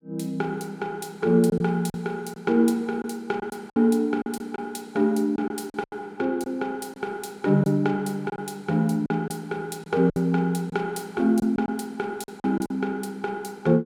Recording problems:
lost packets; 7% of the sound replaced, filled with silence

